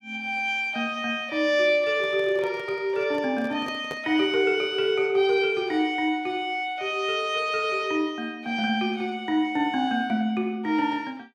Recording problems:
microphone handling noise; from 2 to 4 s; peak -7 dB vs average level

